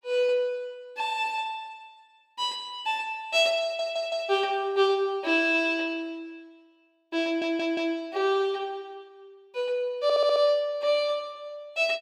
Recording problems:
audio stuttering; at 3.5 s, at 7 s and at 10 s

